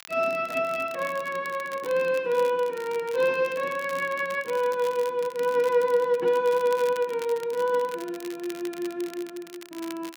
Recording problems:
crackle; vinyl, SNR 19 dB

